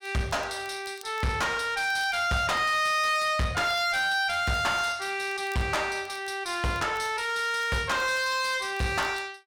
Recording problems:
distorted audio; soft clipping, signal-to-distortion ratio 6 dB
crackling; vinyl, SNR 28 dB

